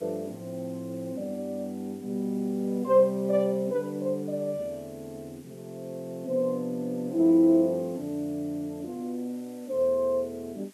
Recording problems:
hiss; slope -1 dB per octave, SNR 27 dB

